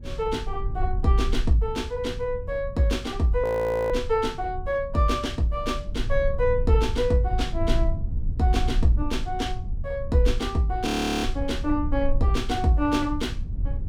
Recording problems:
rumble; below 52 Hz, SNR 8 dB
wind noise; below 110 Hz, SNR 11 dB
frozen audio; at 3.5 s and at 11 s

